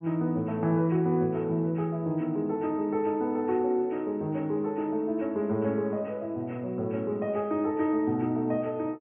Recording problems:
treble cut off; nothing above 3.3 kHz

